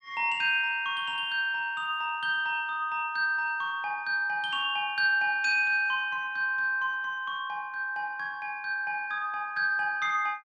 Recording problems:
none

